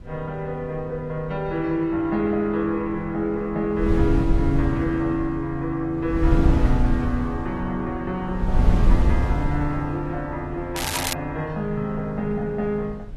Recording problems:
lossy compression; AAC, log-spectral distance 2 dB, nothing above 13.1 kHz
wind on the microphone; below 94 Hz, SNR 0 dB
crackling; at 11 s; loose cable, SNR 3 dB

